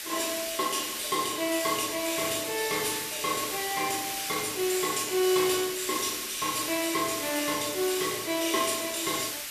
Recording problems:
hiss; slope +2 dB per octave, SNR 4 dB

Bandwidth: 14.5 kHz